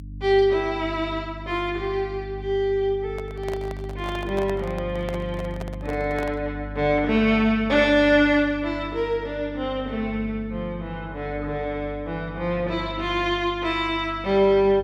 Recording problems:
electrical hum; 50 Hz, harmonics up to 300 Hz, SNR 13 dB
microphone handling noise; from 3 to 6.5 s; peak -7 dB vs average level

